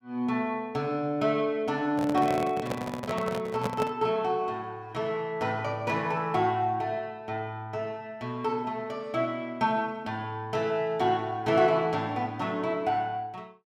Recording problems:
handling noise; from 2 to 4 s; peak +1 dB vs average level

